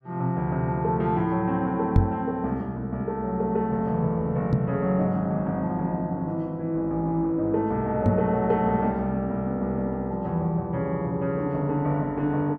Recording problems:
microphone thump; at 2 s, at 4.5 s and at 8 s; peak +9 dB vs average level

